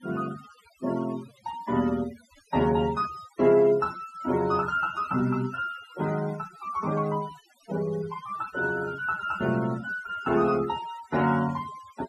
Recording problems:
denoising artefacts; signal-to-artefact ratio 17 dB

